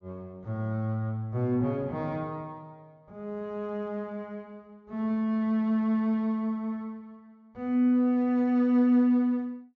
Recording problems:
low-pass filter; nothing above 7.1 kHz

